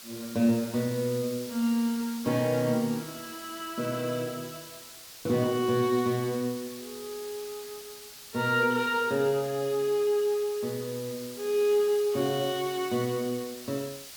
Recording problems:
background hiss; slope +2 dB per octave, SNR 14 dB

